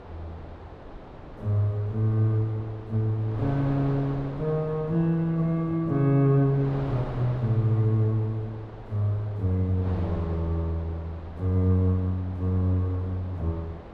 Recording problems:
wind noise; below 730 Hz, SNR 15 dB

